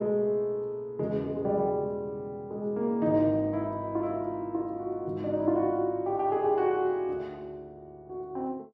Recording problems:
none

